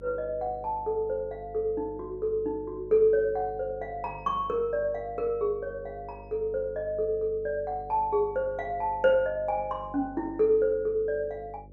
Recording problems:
electrical hum; 50 Hz, harmonics up to 600 Hz, SNR 20 dB

